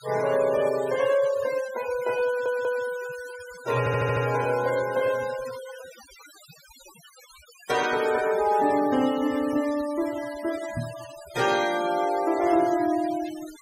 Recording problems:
noise reduction artefacts; signal-to-artefact ratio 15 dB
stutter; at 2.5 s and at 4 s
microphone thump; at 11 s; peak -3 dB vs average level

